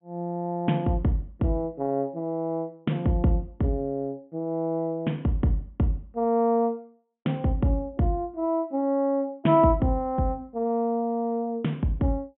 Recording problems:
treble cut off; nothing above 3.5 kHz

